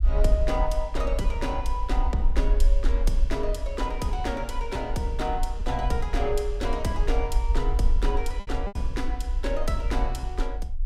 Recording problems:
low-frequency rumble; below 48 Hz, SNR -1 dB
lost packets; 2% of the sound replaced, filled with repeated pitch periods

